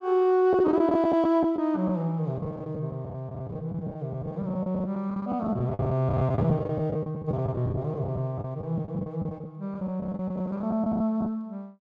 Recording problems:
packet loss; 15% of the sound replaced, filled with the last packet

